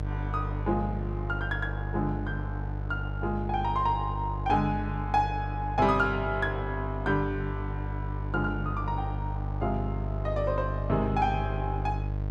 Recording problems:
hum; 50 Hz, harmonics up to 750 Hz, SNR 3 dB

